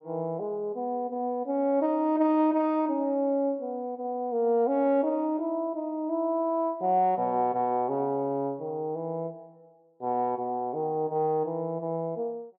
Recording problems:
none

